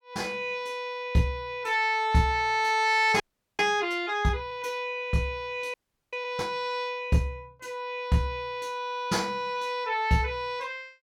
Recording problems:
audio freezing; at 3 s and at 5.5 s

